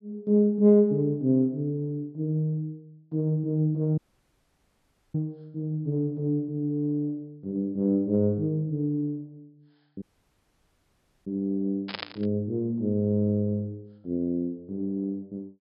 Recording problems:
low-pass filter; nothing above 5.5 kHz
dropout; at 4 s for 1 s and at 10 s for 1 s
burst of static; at 12 s; peak -2 dB vs average level

